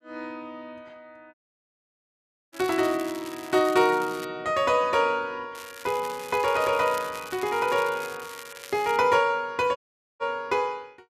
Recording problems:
dropout; at 1.5 s for 1 s and at 10 s
crackle; from 2.5 to 4.5 s and from 5.5 to 9 s; loose cable, SNR 17 dB

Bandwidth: 14.5 kHz